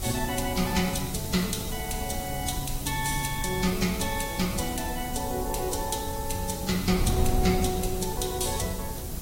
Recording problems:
codec artefacts; AAC, log-spectral distance 8 dB, nothing above 15.5 kHz
background hiss; SNR 8 dB
wind noise; below 130 Hz, SNR 6 dB

